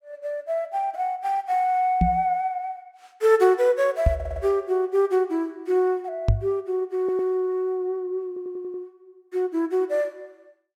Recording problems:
knock on the microphone; at 2 s, at 4 s and at 6.5 s; peak +7 dB vs average level
stutter; at 4 s, at 7 s and at 8.5 s

